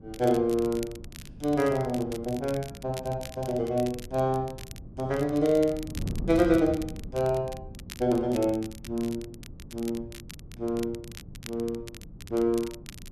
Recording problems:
wind on the microphone; below 200 Hz, SNR 15 dB
crackling; vinyl, SNR 18 dB

